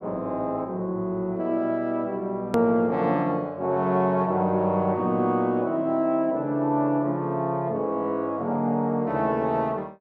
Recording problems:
click at an edit; at 2.5 s

